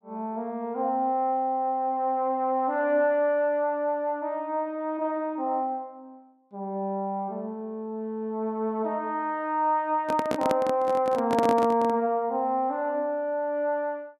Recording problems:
microphone handling noise; from 10 to 12 s; peak +3 dB vs average level

